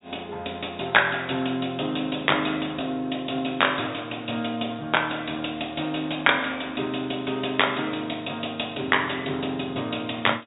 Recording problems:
treble cut off; nothing above 4 kHz

